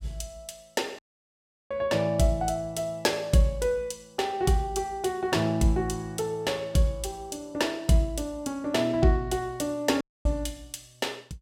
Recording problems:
audio cutting out; at 1 s for 0.5 s and at 10 s

